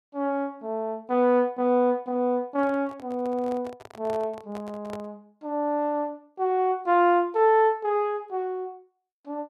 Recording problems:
microphone handling noise; from 2.5 to 5 s; peak -10 dB vs average level

